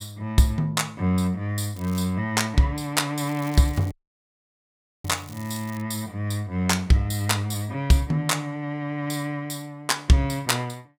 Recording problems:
crackling; at 2 s and from 3.5 to 6 s; loose cable, SNR 22 dB
audio cutting out; at 4 s for 1 s

